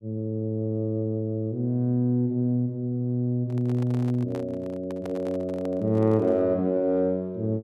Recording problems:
handling noise; from 3.5 to 6.5 s; peak -10 dB vs average level

